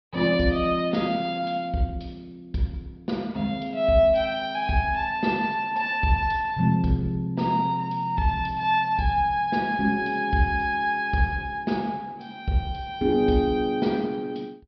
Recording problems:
low-pass filter; nothing above 5.5 kHz

